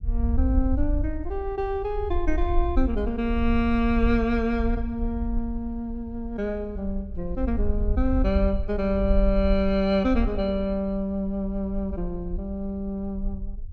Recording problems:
low-frequency rumble; below 60 Hz, SNR 4 dB

